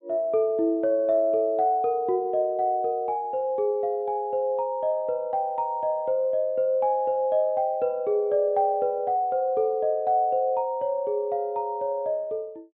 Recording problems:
treble missing; nothing above 4 kHz

